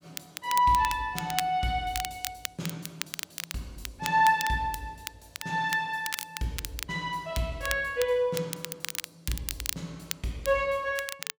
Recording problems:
crackle; vinyl, SNR 8 dB

